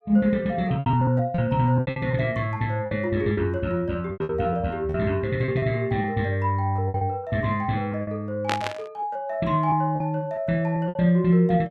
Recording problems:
lost packets; 10% of the sound replaced, filled with repeated pitch periods
static burst; at 8.5 s; peak +1 dB vs average level

